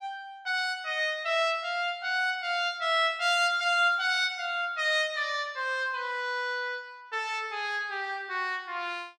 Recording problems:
none

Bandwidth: 16.5 kHz